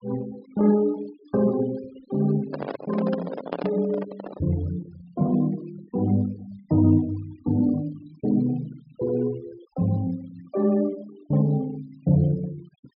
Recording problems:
low-pass filter; nothing above 5.5 kHz
denoising artefacts; signal-to-artefact ratio 22 dB
handling noise; from 2.5 to 4.5 s; peak 0 dB vs average level

